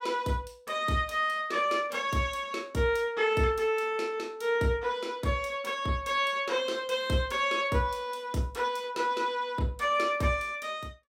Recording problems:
none

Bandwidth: 16 kHz